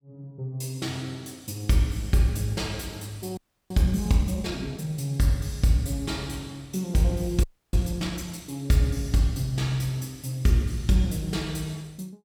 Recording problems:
audio freezing; at 3.5 s and at 7.5 s

